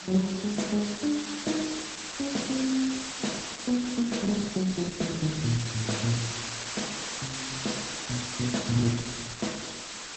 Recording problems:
lossy codec; Opus, log-spectral distance 16 dB, nothing above 8.2 kHz
hiss; slope 0 dB per octave, SNR 4 dB

